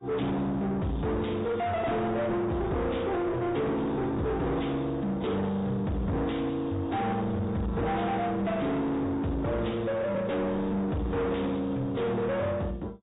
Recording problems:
low-pass filter; nothing above 3.8 kHz
codec artefacts; AAC, log-spectral distance 2 dB
distortion; soft clipping, signal-to-distortion ratio 6 dB

